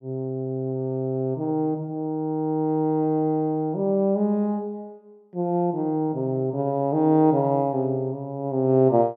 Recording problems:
none

